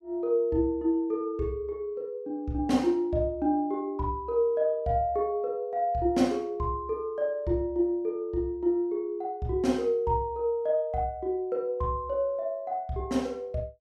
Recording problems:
none

